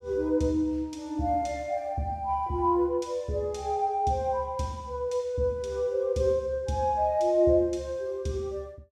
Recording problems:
none

